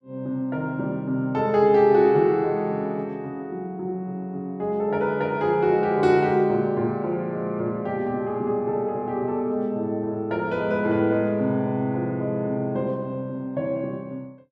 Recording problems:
none

